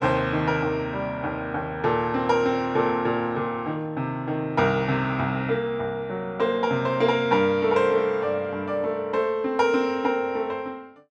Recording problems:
none

